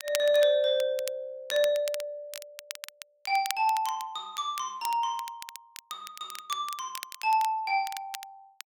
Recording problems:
crackling; vinyl, SNR 13 dB

